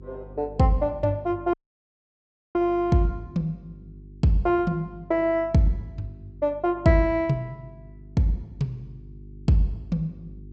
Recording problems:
low-pass filter; nothing above 8 kHz
hum; 50 Hz, harmonics up to 400 Hz, SNR 20 dB
dropout; at 1.5 s for 1 s

